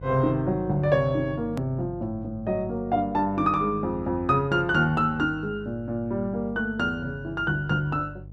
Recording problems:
hum; 50 Hz, harmonics up to 500 Hz, SNR 16 dB
click at an edit; at 1.5 s

